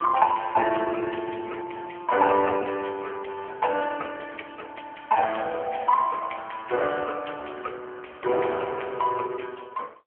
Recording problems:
phone line; 300 Hz to 3 kHz, AMR-NB

